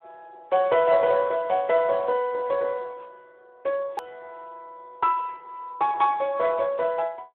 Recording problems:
telephone audio; 260 Hz to 3.4 kHz, Speex
edit click; at 4 s

